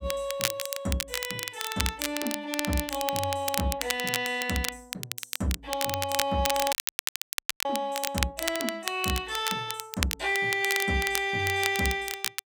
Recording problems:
crackle; vinyl, SNR 3 dB
audio cutting out; at 6.5 s for 1 s

